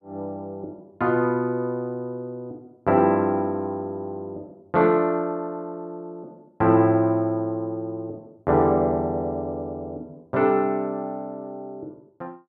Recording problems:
none

